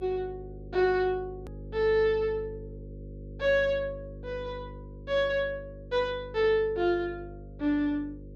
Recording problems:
hum; 50 Hz, harmonics up to 550 Hz, SNR 15 dB
edit click; at 1.5 s

